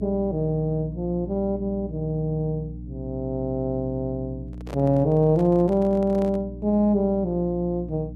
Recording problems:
electrical hum; 60 Hz, harmonics up to 300 Hz, SNR 13 dB
handling noise; from 4.5 to 6.5 s; peak -9 dB vs average level

